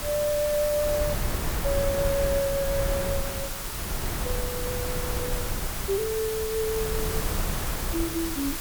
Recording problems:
hiss; SNR 3 dB
wind noise; below 320 Hz, SNR 4 dB

